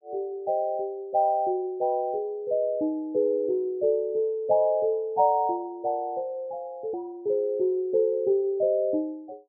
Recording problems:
edit click; at 7 s

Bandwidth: 950 Hz